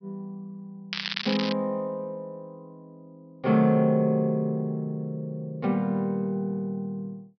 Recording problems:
treble missing; nothing above 5.5 kHz
crackling; at 1 s; loose cable, SNR 4 dB

